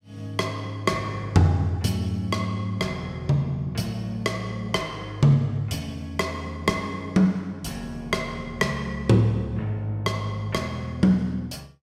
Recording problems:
none

